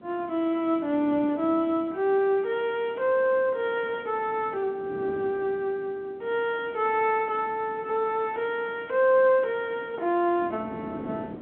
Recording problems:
telephone audio; 240 Hz to 3.5 kHz, G.711
wind on the microphone; below 420 Hz, SNR 18 dB

